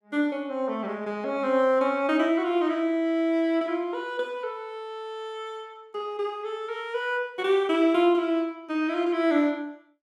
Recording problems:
none

